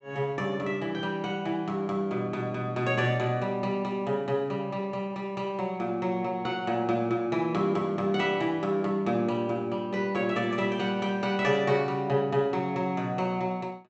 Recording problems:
treble cut off; nothing above 7.9 kHz

